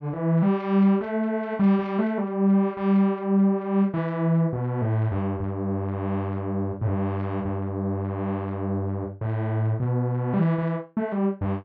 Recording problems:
none

